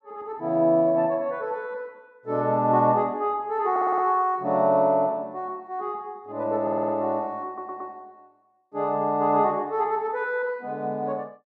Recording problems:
stutter; at 3.5 s, at 6.5 s and at 7.5 s

